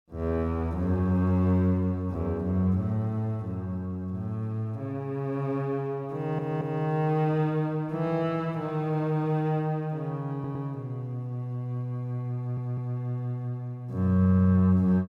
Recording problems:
stutter; 4 times, first at 6 s

